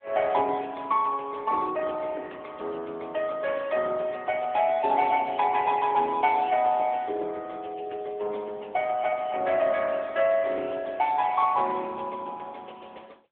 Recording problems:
phone line; 280 Hz to 3.6 kHz, AMR-NB

